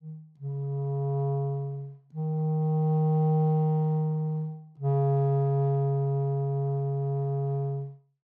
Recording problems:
none

